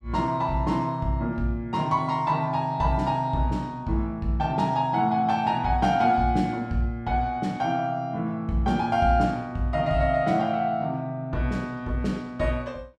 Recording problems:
none

